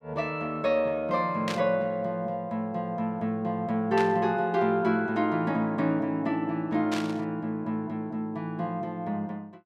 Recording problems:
burst of static; at 1.5 s, at 4 s and at 7 s; peak -2 dB vs average level

